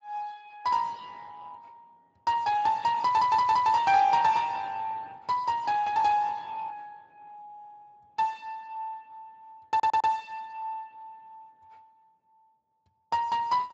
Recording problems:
lossy codec; Speex, log-spectral distance 3 dB, nothing above 7.6 kHz
stutter; at 3 s and at 9.5 s

